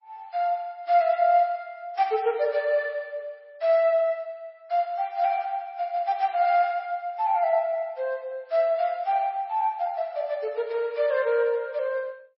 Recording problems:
lossy codec; MP3, log-spectral distance 2 dB, nothing above 4.9 kHz

